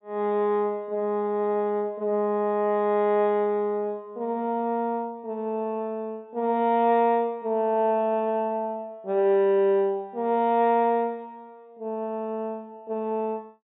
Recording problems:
treble missing; nothing above 4 kHz

